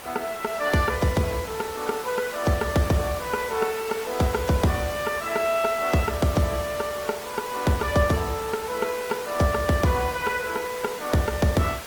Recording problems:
codec artefacts; Opus, log-spectral distance 6 dB, nothing above 19.5 kHz
hiss; slope -3 dB per octave, SNR 11 dB

